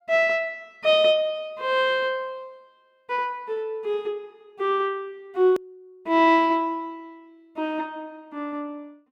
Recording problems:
hard cut with a click; at 5.5 s

